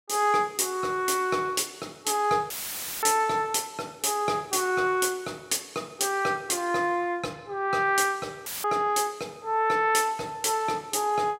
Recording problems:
audio cutting out; at 2.5 s for 0.5 s and at 8.5 s; filled with static

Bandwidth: 16 kHz